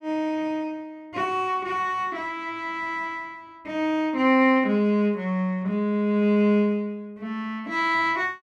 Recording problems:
none

